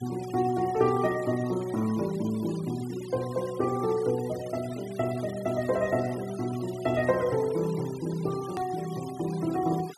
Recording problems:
denoising artefacts; signal-to-artefact ratio 18 dB
click at an edit; at 8.5 s

